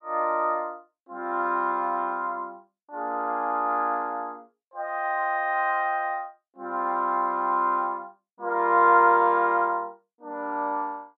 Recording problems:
none

